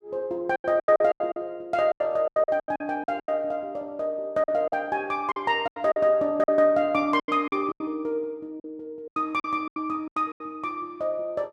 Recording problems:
lost packets; 14% of the sound replaced, filled with silence

